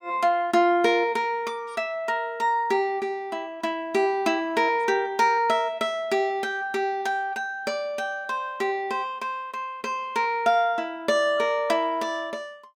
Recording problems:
none

